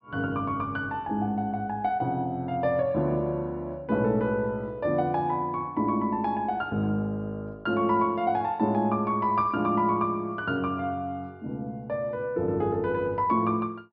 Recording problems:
treble cut off; nothing above 5.5 kHz

